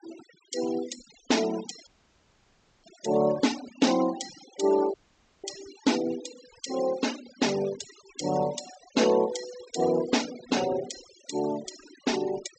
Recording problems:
low-pass filter; nothing above 8 kHz
noise reduction artefacts; signal-to-artefact ratio 13 dB
dropout; at 2 s for 1 s and at 5 s for 0.5 s

